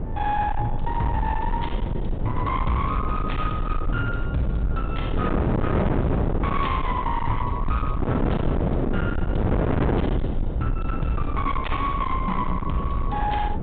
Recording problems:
treble missing; nothing above 4 kHz
distorted audio; hard clipping, uneven, signal-to-distortion ratio 7 dB
low-frequency rumble; below 82 Hz, SNR 3 dB
wind on the microphone; below 390 Hz, SNR 0 dB

